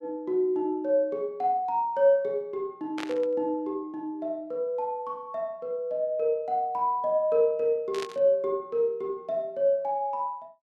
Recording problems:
burst of static; at 3 s and at 8 s; peak -5 dB vs average level

